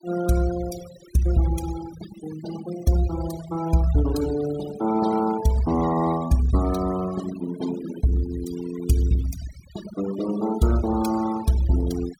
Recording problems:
denoising artefacts; signal-to-artefact ratio 14 dB

